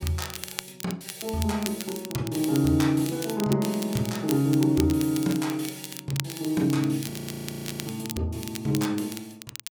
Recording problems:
crackling; vinyl, SNR 11 dB
frozen audio; at 7 s for 1 s

